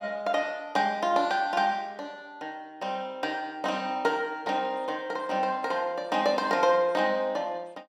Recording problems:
none

